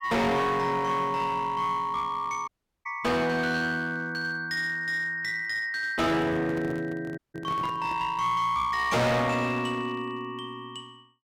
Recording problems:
distortion; hard clipping, uneven, signal-to-distortion ratio 5 dB
audio cutting out; at 2.5 s and at 7 s
microphone handling noise; from 6 to 8 s; peak -6 dB vs average level

